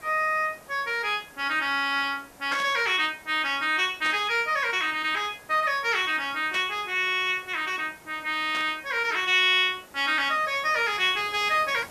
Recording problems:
background hiss; SNR 24 dB
burst of static; 4 times, first at 2.5 s; peak -8 dB vs average level

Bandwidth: 14 kHz